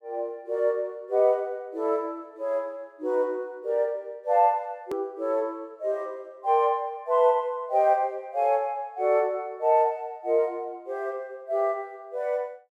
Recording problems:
edit click; at 5 s

